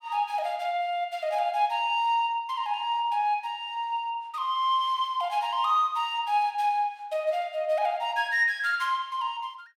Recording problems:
none

